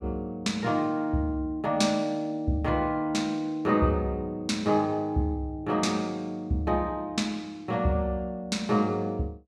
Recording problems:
none

